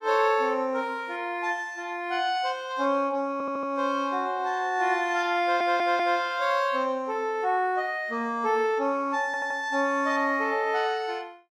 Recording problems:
stutter; at 3.5 s, at 5.5 s and at 9.5 s

